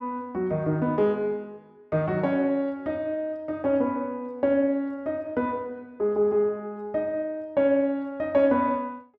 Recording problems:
none

